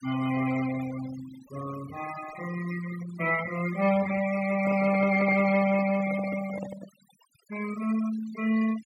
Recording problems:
denoising artefacts; signal-to-artefact ratio 14 dB
handling noise; from 4.5 to 7 s; peak -8 dB vs average level

